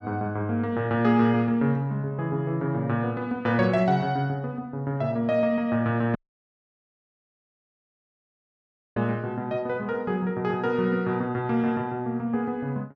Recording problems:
audio cutting out; at 6 s for 3 s

